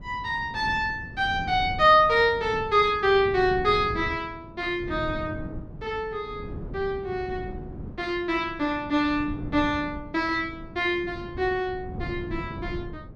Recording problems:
wind on the microphone; below 230 Hz, SNR 14 dB

